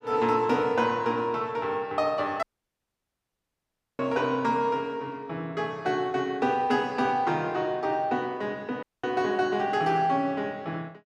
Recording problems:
audio cutting out; at 2.5 s for 1.5 s and at 9 s

